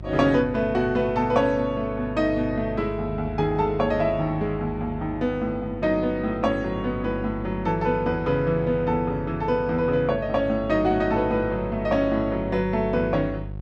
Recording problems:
electrical hum; 50 Hz, harmonics up to 550 Hz, SNR 12 dB

